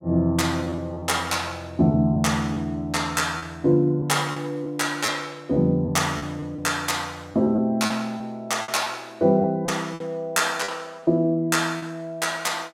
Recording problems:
lost packets; 6% of the sound replaced, filled with repeated pitch periods

